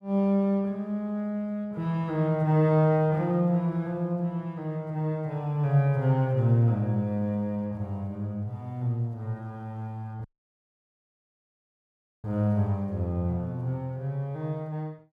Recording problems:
dropout; at 10 s for 2 s

